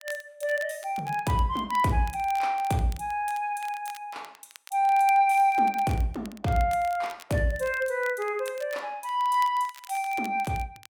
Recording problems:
crackle; vinyl, SNR 21 dB

